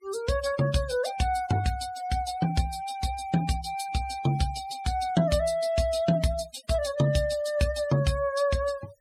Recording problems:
noise reduction artefacts; signal-to-artefact ratio 16 dB

